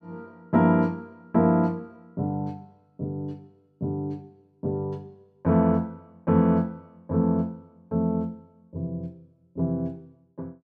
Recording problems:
none

